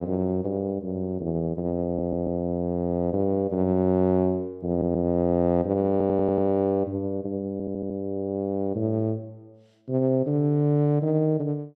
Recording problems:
stutter; 4 times, first at 2 s

